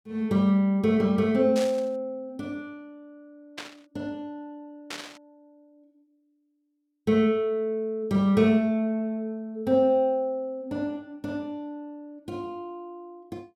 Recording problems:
burst of static; at 1.5 s, at 3.5 s and at 5 s; peak -6 dB vs average level

